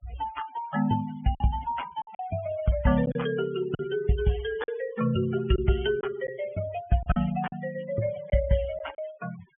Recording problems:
treble cut off; nothing above 3.3 kHz
noise reduction artefacts; signal-to-artefact ratio 17 dB
packet loss; 5% of the sound replaced, filled with silence

